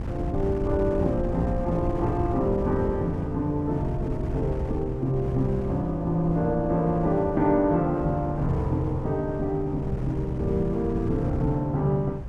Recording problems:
wind on the microphone; below 160 Hz, SNR 7 dB

